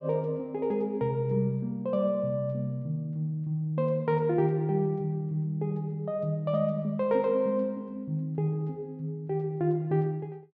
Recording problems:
none

